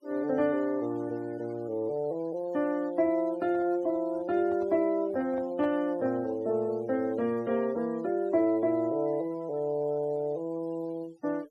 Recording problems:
noise reduction artefacts; signal-to-artefact ratio 25 dB
microphone handling noise; from 3 to 6.5 s; peak -8 dB vs average level

